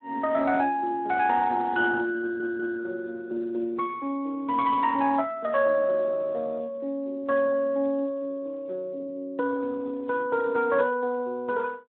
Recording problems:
telephone audio; 300 Hz to 3.3 kHz, Speex
stutter; at 2 s

